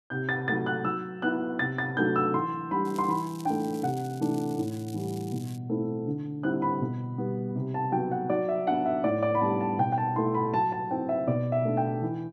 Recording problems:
crackle; from 3 to 5.5 s; loose cable, SNR 21 dB

